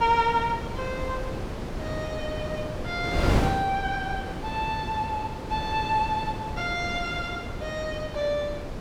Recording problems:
wind noise; below 570 Hz, SNR 3 dB

